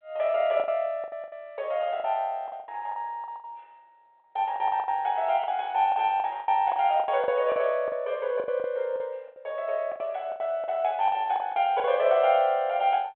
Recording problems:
phone line; 320 Hz to 3.5 kHz, G.726
lost packets; 14% of the sound replaced, filled with the last packet

